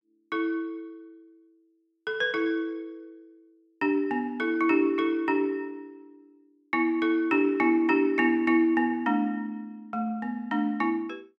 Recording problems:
none

